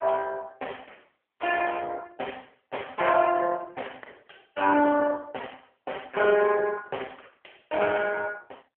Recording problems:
phone line; 370 Hz to 3.2 kHz, AMR-NB

